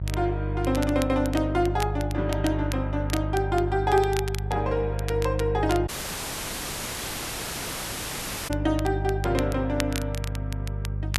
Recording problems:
hum; 50 Hz, harmonics up to 400 Hz, SNR 4 dB
crackle; vinyl, SNR 13 dB
audio cutting out; at 6 s for 2.5 s

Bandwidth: 13 kHz